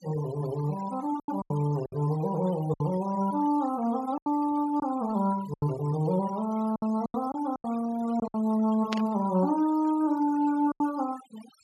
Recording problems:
noise reduction artefacts; signal-to-artefact ratio 18 dB
packet loss; 8% of the sound replaced, filled with silence
burst of static; at 9 s; peak -1 dB vs average level

